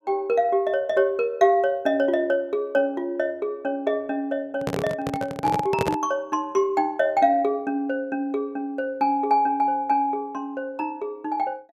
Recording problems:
microphone handling noise; from 4.5 to 6 s; peak +2 dB vs average level

